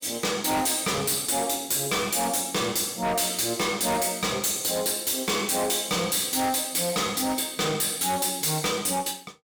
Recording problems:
distorted audio; hard clipping, uneven, signal-to-distortion ratio 6 dB

